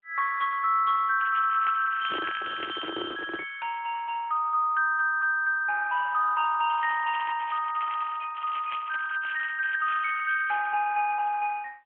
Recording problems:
telephone audio; 260 Hz to 3.2 kHz, AMR-NB
crackling; from 1 to 3 s and from 6.5 to 11 s; loose cable, SNR 16 dB
microphone handling noise; from 2 to 3.5 s; peak -5 dB vs average level

